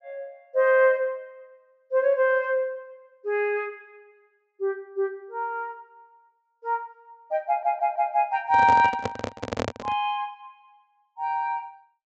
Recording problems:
treble cut off; nothing above 8 kHz
audio stuttering; at 7.5 s
microphone handling noise; from 8.5 to 10 s; peak 0 dB vs average level

